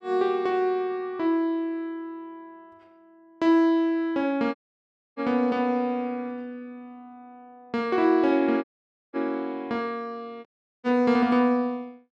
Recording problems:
audio cutting out; at 4.5 s for 0.5 s, at 8.5 s and at 10 s

